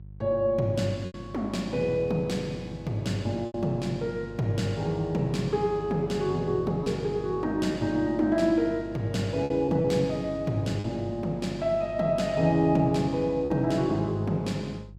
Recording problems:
hum; 50 Hz, harmonics up to 350 Hz, SNR 18 dB
packet loss; 3% of the sound replaced, filled with repeated pitch periods

